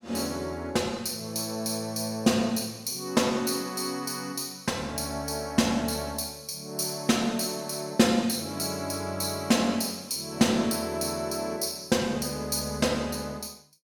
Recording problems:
none

